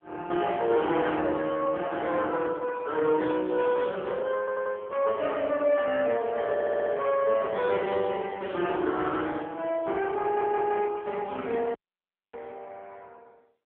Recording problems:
phone line; 260 Hz to 3.4 kHz, AMR-NB
static burst; at 3.5 s; peak -11 dB vs average level
stutter; at 4.5 s, at 6.5 s and at 10 s
audio cutting out; at 12 s for 0.5 s

